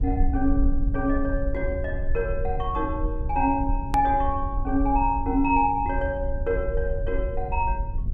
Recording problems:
low-frequency rumble; below 62 Hz, SNR 4 dB
edit click; at 4 s

